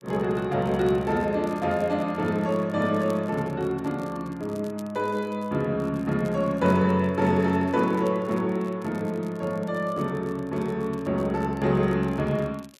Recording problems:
crackle; vinyl, SNR 28 dB

